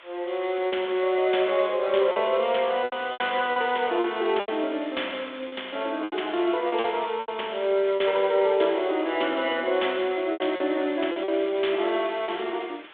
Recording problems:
phone line; 280 Hz to 3.6 kHz, G.726
background hiss; SNR 23 dB
packet loss; 7% of the sound replaced, filled with repeated pitch periods

